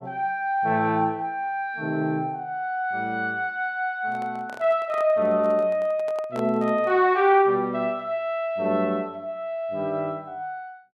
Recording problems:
microphone handling noise; from 4 to 7 s; peak -9 dB vs average level

